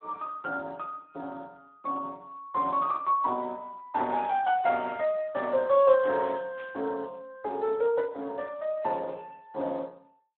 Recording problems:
phone line; 260 Hz to 4 kHz, Speex
burst of static; at 6.5 s; peak -17 dB vs average level

